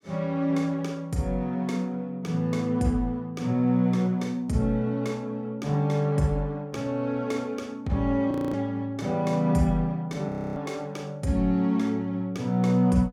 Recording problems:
audio freezing; at 8.5 s and at 10 s

